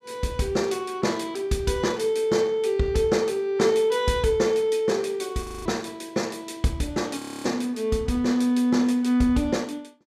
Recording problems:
frozen audio; at 5.5 s and at 7 s

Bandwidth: 14.5 kHz